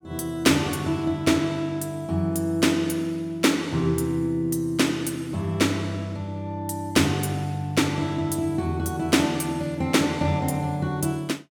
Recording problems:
none

